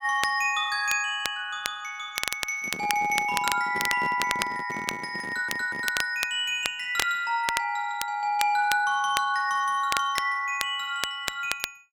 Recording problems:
crackling; vinyl, SNR 7 dB
microphone handling noise; from 2.5 to 6 s; peak -6 dB vs average level
stutter; at 5.5 s

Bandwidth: 18.5 kHz